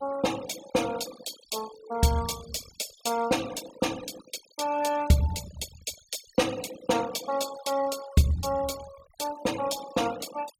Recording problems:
noise reduction artefacts; signal-to-artefact ratio 14 dB

